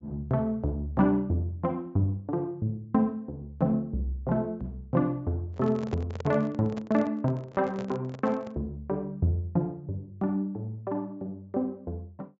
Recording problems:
treble missing; nothing above 8 kHz
handling noise; from 5.5 to 8.5 s; peak -5 dB vs average level

